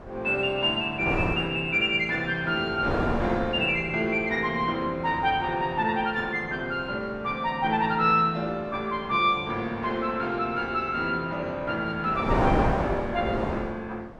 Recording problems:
wind on the microphone; below 800 Hz, SNR 6 dB

